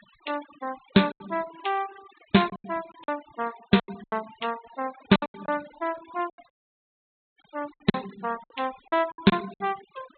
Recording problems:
treble cut off; nothing above 4 kHz
noise reduction artefacts; signal-to-artefact ratio 17 dB
lost packets; 13% of the sound replaced, filled with silence
audio cutting out; at 6.5 s for 1 s

